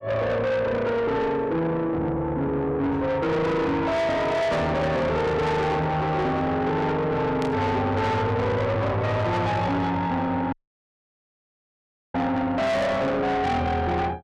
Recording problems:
distorted audio; soft clipping, signal-to-distortion ratio 7 dB
burst of static; at 7.5 s; peak -9 dB vs average level
dropout; at 11 s for 1.5 s

